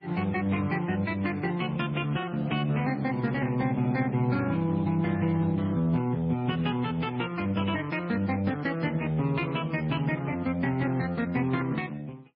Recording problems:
codec artefacts; Speex, then MP3, log-spectral distance 3 dB, nothing above 4.8 kHz

